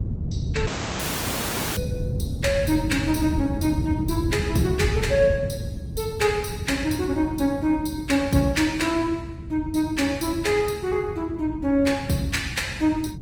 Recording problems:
lossy compression; Opus, log-spectral distance 3 dB, nothing above 19 kHz
rumble; below 160 Hz, SNR 7 dB
audio cutting out; at 0.5 s for 1 s

